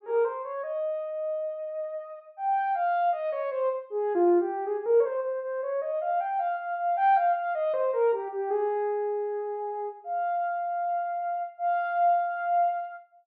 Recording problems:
treble cut off; nothing above 5 kHz

